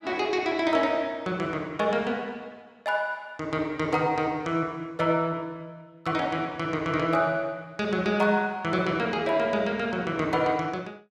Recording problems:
none

